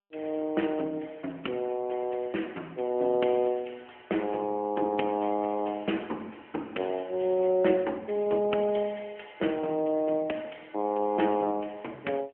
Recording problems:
telephone audio; 240 Hz to 3.2 kHz, AMR-NB

